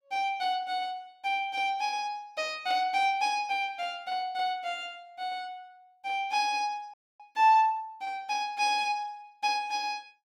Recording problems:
frozen audio; at 7 s

